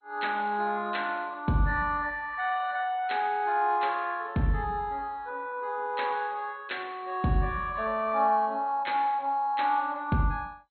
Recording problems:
lossy codec; MP2, log-spectral distance 3 dB, nothing above 4.2 kHz

